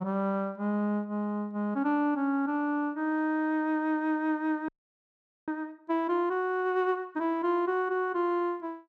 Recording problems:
audio freezing; at 4.5 s for 1 s

